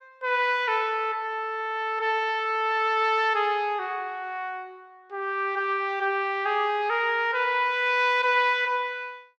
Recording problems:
none

